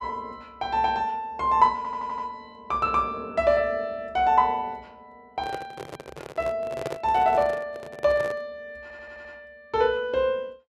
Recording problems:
audio stuttering; at 2 s and at 9 s
microphone handling noise; from 5.5 to 8.5 s; peak -2 dB vs average level

